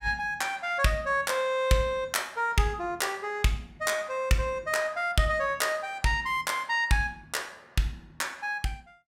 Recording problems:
none

